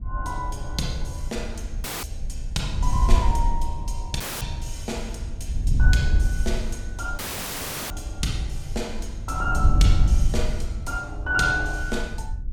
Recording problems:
wind noise; below 70 Hz, SNR -2 dB
audio cutting out; at 2 s, at 4 s and at 7 s for 0.5 s

